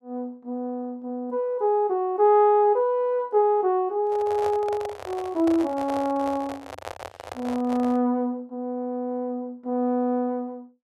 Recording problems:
handling noise; from 4 to 8 s; peak -6 dB vs average level

